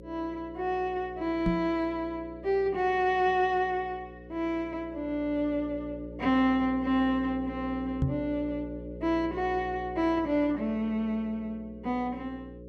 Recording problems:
hum; 60 Hz, harmonics up to 540 Hz, SNR 14 dB
microphone thump; at 1.5 s and at 8 s; peak +5 dB vs average level

